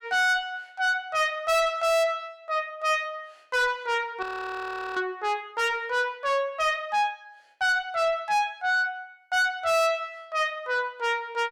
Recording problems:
distortion; soft clipping, signal-to-distortion ratio 5 dB
frozen audio; at 4 s for 0.5 s

